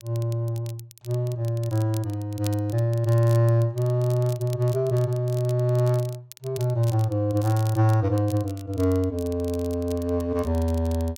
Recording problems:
crackle; vinyl, SNR 21 dB

